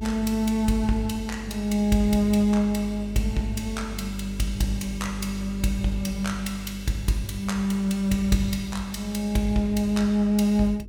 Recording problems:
electrical hum; 50 Hz, harmonics up to 450 Hz, SNR 13 dB

